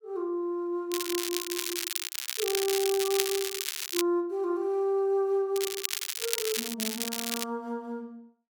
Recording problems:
crackle; from 1 to 4 s and from 5.5 to 7.5 s; loose cable, SNR 1 dB

